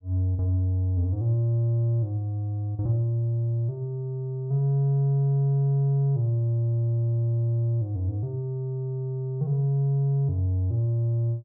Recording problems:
none

